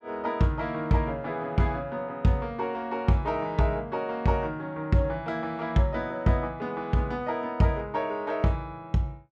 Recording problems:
none

